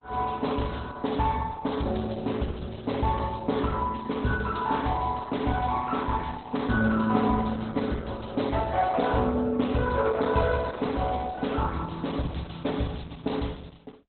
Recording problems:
lossy compression; Opus, log-spectral distance 6 dB, nothing above 4 kHz

